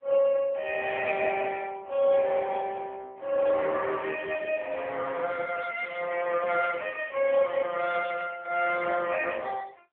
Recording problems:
telephone audio; 320 Hz to 3.5 kHz, AMR-NB

